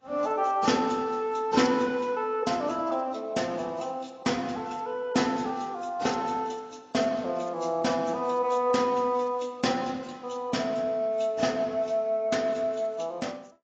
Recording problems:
codec artefacts; AAC, log-spectral distance 3 dB, nothing above 7.3 kHz

